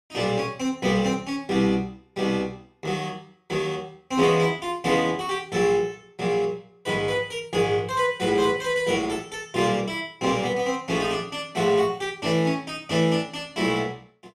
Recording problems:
none

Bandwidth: 15 kHz